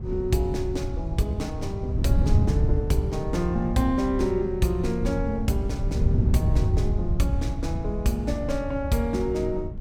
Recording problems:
wind noise; below 110 Hz, SNR 1 dB

